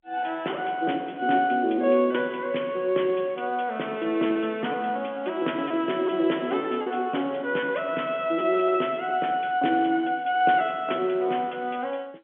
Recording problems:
phone line; 240 Hz to 3.4 kHz, G.711
lost packets; 5% of the sound replaced, filled with repeated pitch periods

